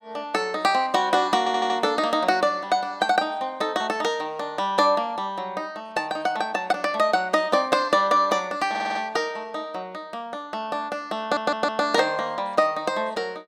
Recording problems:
stutter; at 1.5 s, at 8.5 s and at 11 s

